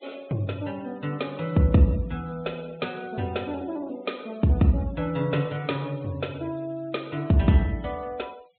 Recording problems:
treble cut off; nothing above 4 kHz
denoising artefacts; signal-to-artefact ratio 26 dB

